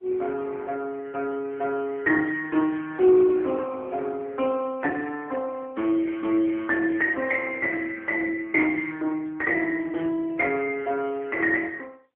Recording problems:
telephone audio; 220 Hz to 3.3 kHz, AMR-NB

